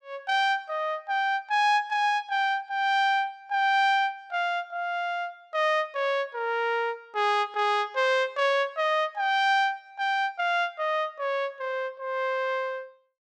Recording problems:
none

